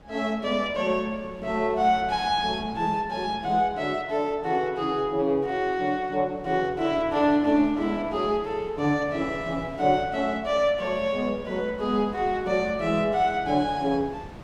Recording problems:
wind on the microphone; below 590 Hz, SNR 20 dB

